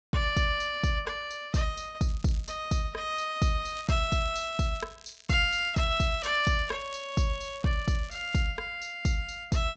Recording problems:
low-pass filter; nothing above 8 kHz
crackling; at 2 s and from 3.5 to 8.5 s; loose cable, SNR 22 dB

